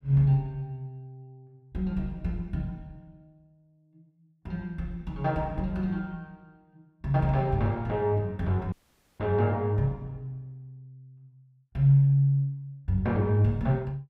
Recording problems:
dropout; at 8.5 s

